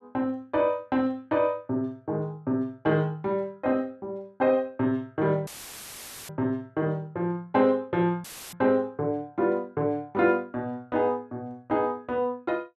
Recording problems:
dropout; at 5.5 s for 1 s and at 8 s; filled with static

